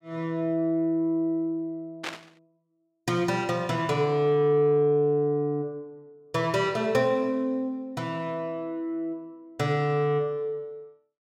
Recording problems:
static burst; at 2 s; peak -2 dB vs average level

